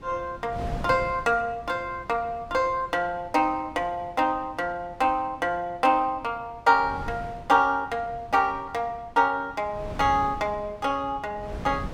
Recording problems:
wind noise; below 350 Hz, SNR 16 dB

